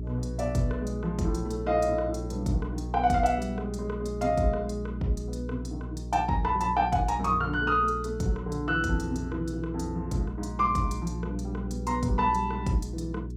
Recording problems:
hum; 60 Hz, harmonics up to 420 Hz, SNR 8 dB

